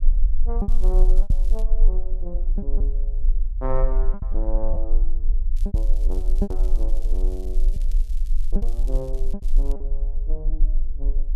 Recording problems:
rumble; below 34 Hz, strongest tone 20 Hz, SNR -11 dB
lost packets; 6% of the sound replaced, filled with repeated pitch periods
crackling; from 0.5 to 1.5 s and from 5.5 to 9.5 s; loose cable, SNR 17 dB

